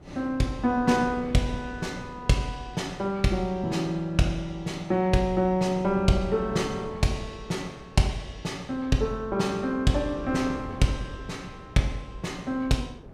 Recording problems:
wind on the microphone; below 410 Hz, SNR 16 dB

